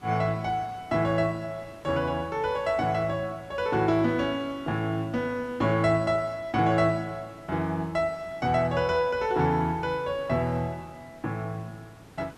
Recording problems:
background hiss; slope -5 dB per octave, SNR 24 dB

